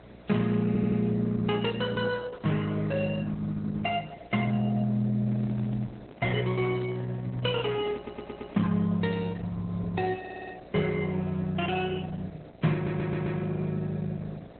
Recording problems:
lossy codec; Opus, log-spectral distance 4 dB, nothing above 4.1 kHz
hum; 60 Hz, harmonics up to 720 Hz, SNR 19 dB
background hiss; SNR 28 dB
stutter; 4 times, first at 0.5 s
microphone handling noise; from 5 to 9 s; peak -7 dB vs average level

